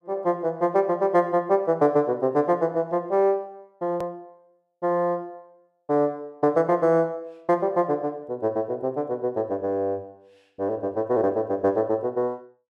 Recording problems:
edit click; at 4 s

